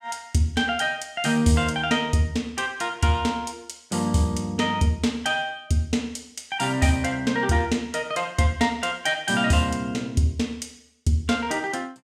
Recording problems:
none

